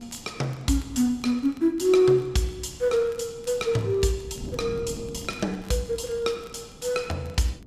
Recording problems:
wind on the microphone; below 290 Hz, SNR 18 dB
crackling; vinyl, SNR 29 dB

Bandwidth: 14.5 kHz